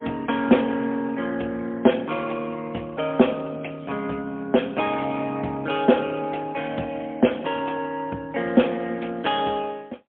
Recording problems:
phone line; 190 Hz to 3.5 kHz, AMR-NB, then MP3

